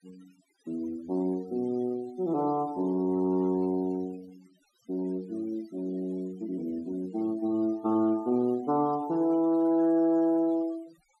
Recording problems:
noise reduction artefacts; signal-to-artefact ratio 24 dB

